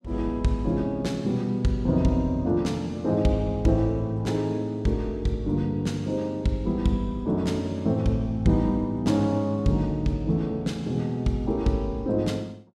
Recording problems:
none

